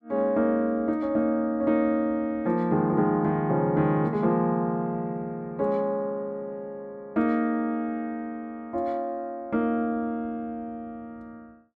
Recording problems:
none

